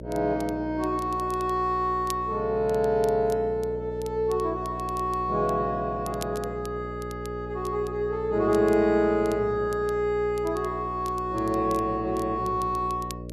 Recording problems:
hum; 60 Hz, harmonics up to 600 Hz, SNR 11 dB
crackling; vinyl, SNR 22 dB

